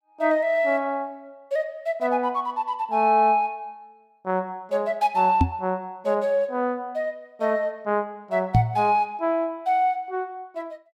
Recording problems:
knock on the microphone; at 5.5 s and at 8.5 s; peak +8 dB vs average level

